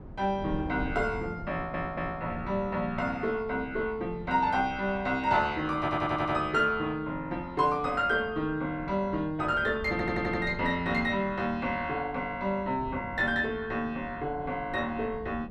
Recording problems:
wind noise; below 280 Hz, SNR 15 dB
stutter; at 1.5 s, at 6 s and at 10 s

